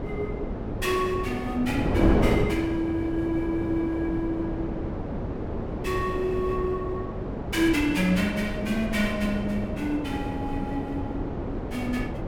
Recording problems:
wind noise; below 450 Hz, SNR 3 dB

